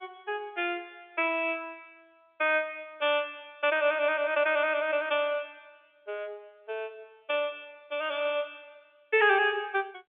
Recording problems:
phone line; 340 Hz to 3.5 kHz, G.711

